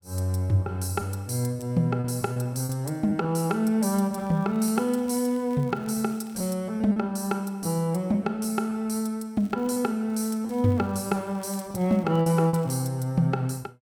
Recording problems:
lost packets; 4% of the sound replaced, filled with repeated pitch periods
crackle; from 4 to 6.5 s, at 9.5 s and from 10 to 13 s; loose cable, SNR 29 dB

